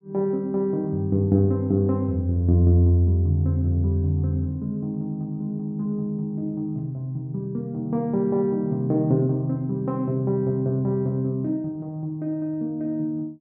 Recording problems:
none

